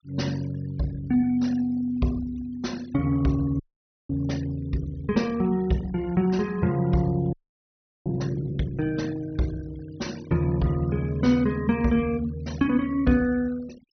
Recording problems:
treble missing; nothing above 6.1 kHz
denoising artefacts; signal-to-artefact ratio 22 dB
frozen audio; at 3.5 s and at 7.5 s for 0.5 s

